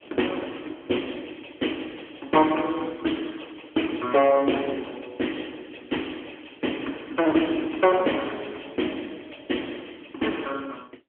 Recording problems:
phone line; 240 Hz to 3.3 kHz, AMR-NB

